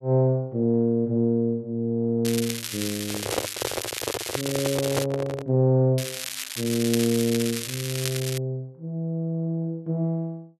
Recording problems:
crackle; from 2.5 to 5 s and from 6 to 8.5 s; loose cable, SNR 6 dB
microphone handling noise; from 3 to 5.5 s; peak +3 dB vs average level

